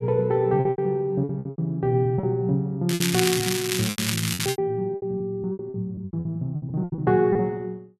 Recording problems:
lost packets; 16% of the sound replaced, filled with repeated pitch periods
crackling; from 3 to 4.5 s; loose cable, SNR 2 dB

